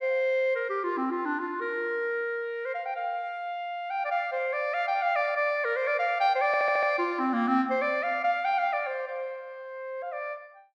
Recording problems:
audio stuttering; at 6.5 s

